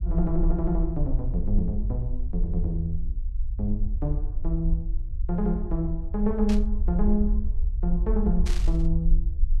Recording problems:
rumble; below 52 Hz, SNR 0 dB
static burst; at 6.5 s and at 8.5 s; peak -5 dB vs average level

